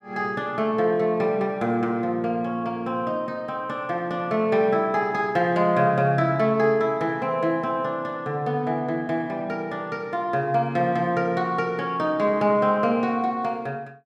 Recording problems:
none

